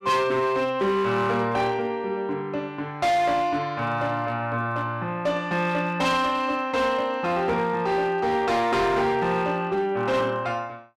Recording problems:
distorted audio; hard clipping, signal-to-distortion ratio 10 dB

